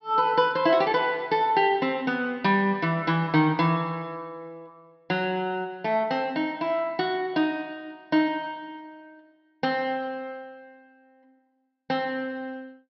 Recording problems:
treble cut off; nothing above 5.5 kHz

